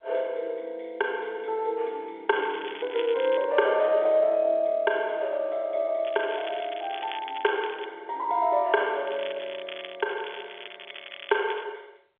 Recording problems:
phone line; 300 Hz to 3.5 kHz, G.711
crackle; from 2.5 to 3.5 s, from 6 to 8 s and from 9 to 12 s; loose cable, SNR 14 dB

